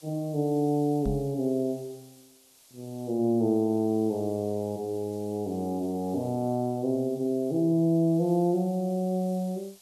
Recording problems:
hiss; SNR 26 dB
knock on the microphone; at 1 s; peak -1 dB vs average level

